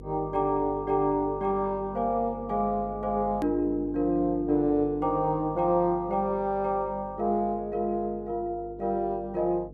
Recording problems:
hum; 50 Hz, harmonics up to 500 Hz, SNR 17 dB
click at an edit; at 3.5 s

